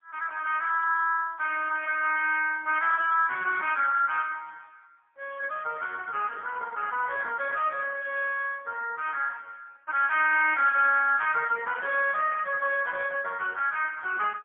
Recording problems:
telephone audio; 390 Hz to 3.1 kHz, AMR-NB, then MP3

